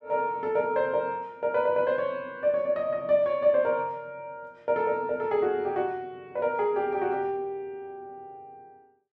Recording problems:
none

